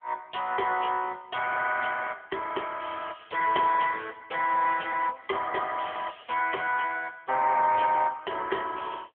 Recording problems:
phone line; 320 Hz to 3.1 kHz, AMR-NB

